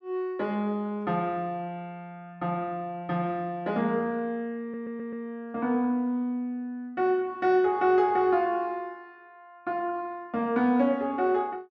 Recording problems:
stutter; at 4.5 s

